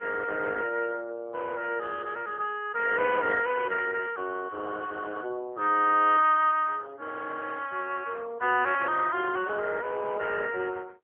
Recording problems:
telephone audio; 320 Hz to 3 kHz, AMR-NB

